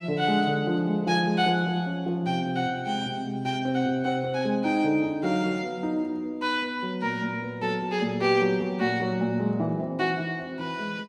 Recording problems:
none

